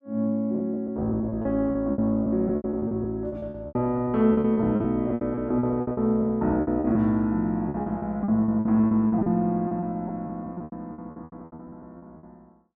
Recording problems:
packet loss; 19% of the sound replaced, filled with repeated pitch periods

